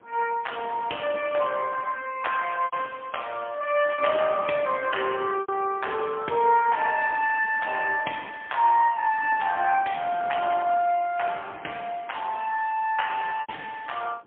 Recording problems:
telephone audio; 300 Hz to 3.3 kHz, AMR-NB, then MP3
wind on the microphone; below 1 kHz, SNR 19 dB
packet loss; 2% of the sound replaced, filled with repeated pitch periods

